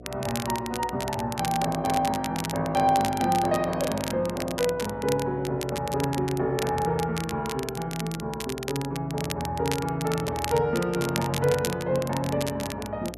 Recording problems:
hum; 60 Hz, harmonics up to 720 Hz, SNR 17 dB
crackling; vinyl, SNR 10 dB

